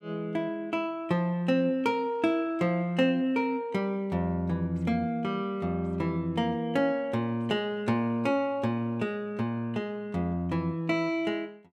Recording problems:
none

